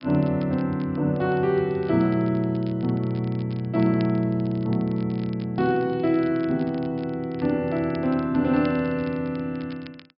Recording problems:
treble missing; nothing above 5.5 kHz
crackle; vinyl, SNR 27 dB

